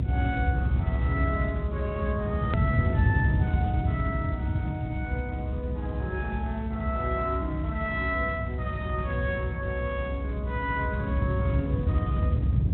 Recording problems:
treble missing; nothing above 3.7 kHz
codec artefacts; Speex, log-spectral distance 2 dB
low-frequency rumble; below 140 Hz, strongest tone 64 Hz, SNR -4 dB
edit click; at 2.5 s

